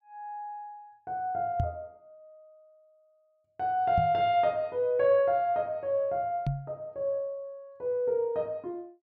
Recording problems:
knock on the microphone; at 1.5 s, at 4 s and at 6.5 s; peak +3 dB vs average level

